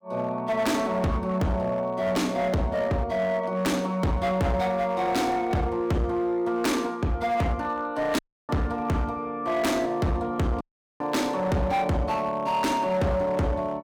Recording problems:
distortion; hard clipping, signal-to-distortion ratio 8 dB
audio cutting out; at 8 s and at 11 s

